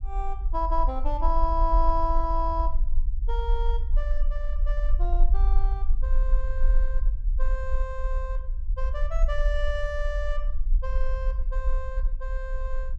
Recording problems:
low-frequency rumble; below 42 Hz, strongest tone 22 Hz, SNR -4 dB

